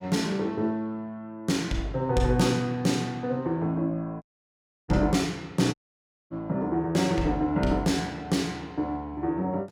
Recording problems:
audio cutting out; at 4 s for 0.5 s and at 5.5 s for 0.5 s

